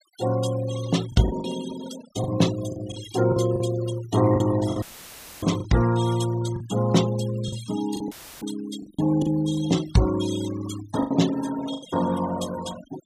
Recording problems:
denoising artefacts; signal-to-artefact ratio 14 dB
packet loss; 7% of the sound replaced, filled with the last packet
audio cutting out; at 5 s for 0.5 s and at 8 s; filled with static

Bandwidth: 15 kHz